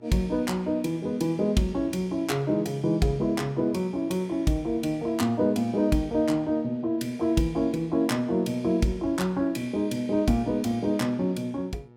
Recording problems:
mains hum; 60 Hz, harmonics up to 1.8 kHz, SNR 26 dB

